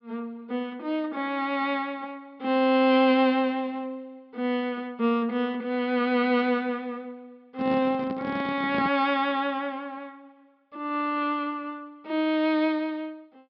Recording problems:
low-pass filter; nothing above 5.5 kHz
microphone handling noise; from 7.5 to 9 s; peak -1 dB vs average level

